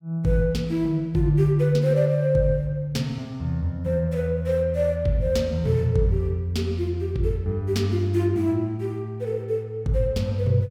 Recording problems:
none

